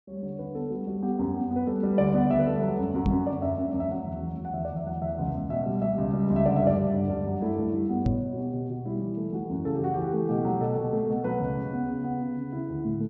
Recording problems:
treble cut off; nothing above 8 kHz
microphone bump; at 3 s and at 8 s; peak +5 dB vs average level

